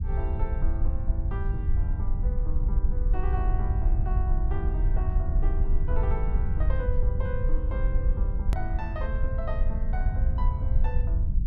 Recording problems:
rumble; below 64 Hz, SNR -11 dB
click at an edit; at 8.5 s

